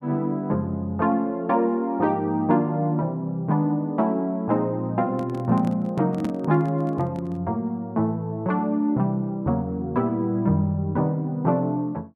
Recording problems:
handling noise; from 5 to 7.5 s; peak -2 dB vs average level

